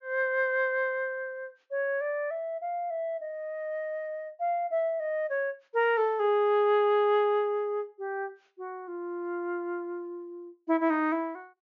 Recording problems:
treble missing; nothing above 7.1 kHz

